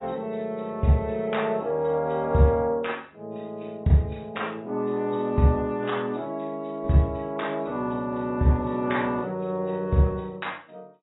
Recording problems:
lossy compression; AAC, log-spectral distance 2 dB, nothing above 3.8 kHz

